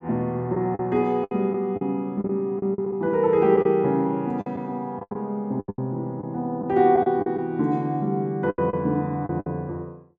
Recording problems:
lost packets; 10% of the sound replaced, filled with the last packet

